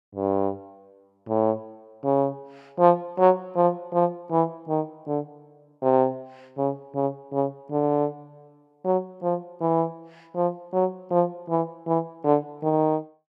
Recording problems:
none

